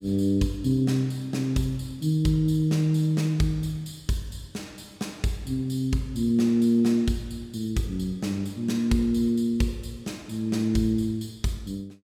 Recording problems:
none

